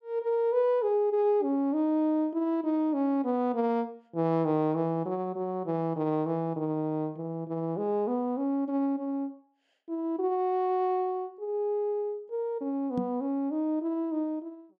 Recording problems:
knock on the microphone; at 13 s; peak +1 dB vs average level

